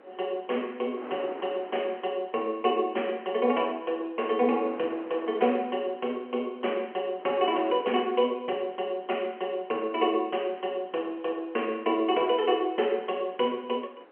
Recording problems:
phone line; 280 Hz to 3.1 kHz, G.711
wind on the microphone; below 1.1 kHz, SNR 20 dB

